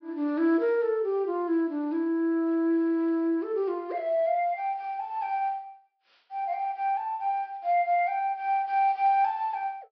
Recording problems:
low-pass filter; nothing above 5.5 kHz

